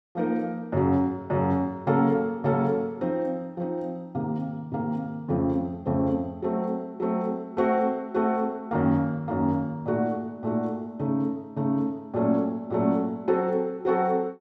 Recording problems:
none

